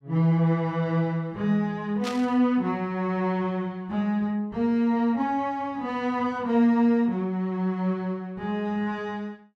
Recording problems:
static burst; at 2 s; peak -4 dB vs average level

